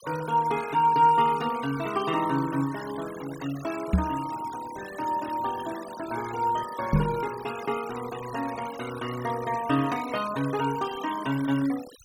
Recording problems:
noise reduction artefacts; signal-to-artefact ratio 15 dB
microphone thump; at 4 s and at 7 s; peak +9 dB vs average level

